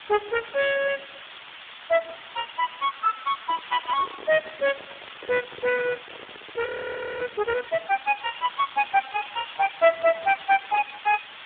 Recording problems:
phone line; 970 Hz to 2.8 kHz, Speex
hiss; SNR 14 dB
handling noise; from 3.5 to 7.5 s; peak -9 dB vs average level
crackling; at 3.5 s and from 8 to 11 s; loose cable, SNR 21 dB
frozen audio; at 6.5 s for 0.5 s

